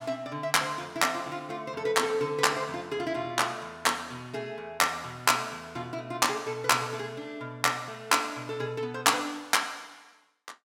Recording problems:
none

